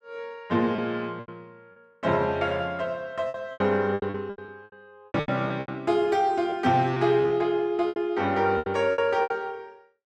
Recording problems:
lost packets; 13% of the sound replaced, filled with repeated pitch periods

